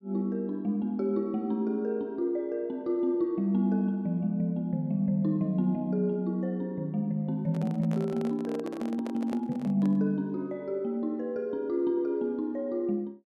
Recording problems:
microphone handling noise; from 7.5 to 10 s; peak -7 dB vs average level

